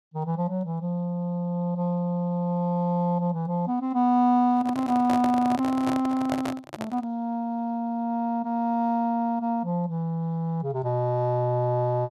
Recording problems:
handling noise; from 4.5 to 7 s; peak 0 dB vs average level

